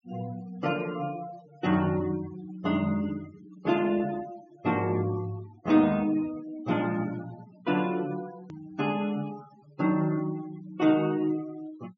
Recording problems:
low-pass filter; nothing above 7.1 kHz
noise reduction artefacts; signal-to-artefact ratio 19 dB
click at an edit; at 8.5 s

